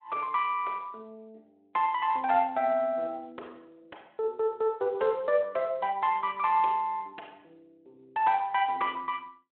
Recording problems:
telephone audio; 300 Hz to 3.5 kHz, Speex

